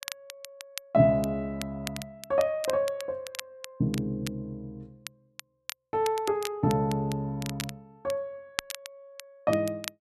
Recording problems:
crackling; vinyl, SNR 12 dB

